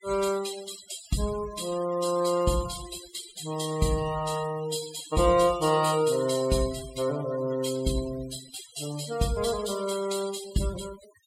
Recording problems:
denoising artefacts; signal-to-artefact ratio 13 dB

